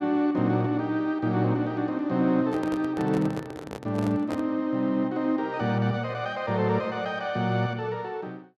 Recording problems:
microphone handling noise; from 2.5 to 4.5 s; peak -4 dB vs average level

